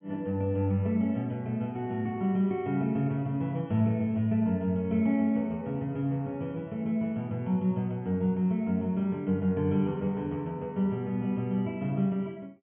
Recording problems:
low-pass filter; nothing above 3.2 kHz

